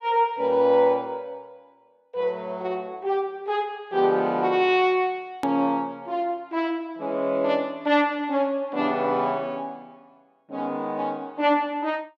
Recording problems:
hard cut with a click; at 5.5 s

